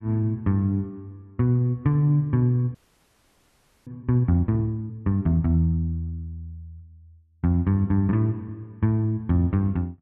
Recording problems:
audio freezing; at 3 s for 1 s

